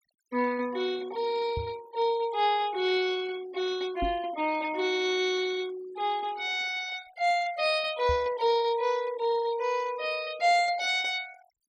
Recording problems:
noise reduction artefacts; signal-to-artefact ratio 19 dB
knock on the microphone; at 1.5 s, at 4 s and at 8 s; peak -2 dB vs average level

